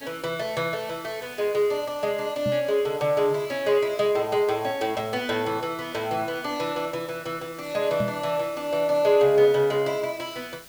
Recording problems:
background hiss; slope -1 dB per octave, SNR 21 dB
microphone thump; at 2.5 s and at 8 s; peak -2 dB vs average level

